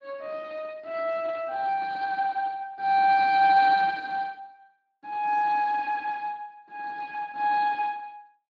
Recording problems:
codec artefacts; Speex, then Speex, log-spectral distance 3 dB

